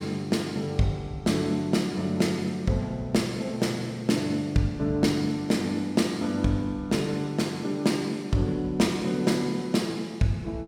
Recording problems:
none

